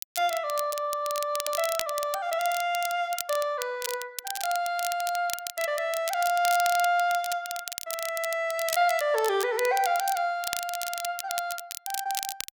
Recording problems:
crackle; vinyl, SNR 7 dB

